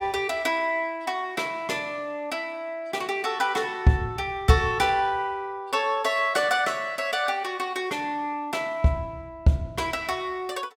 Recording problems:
none

